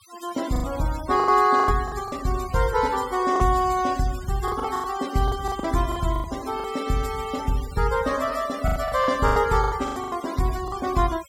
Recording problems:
noise reduction artefacts; signal-to-artefact ratio 16 dB
lost packets; 12% of the sound replaced, filled with the last packet

